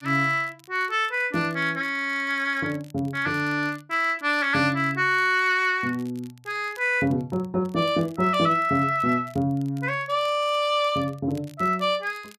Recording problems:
crackling; vinyl, SNR 29 dB

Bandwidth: 14.5 kHz